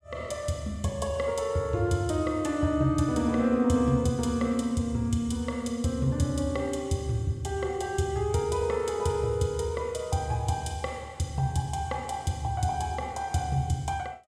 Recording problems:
none

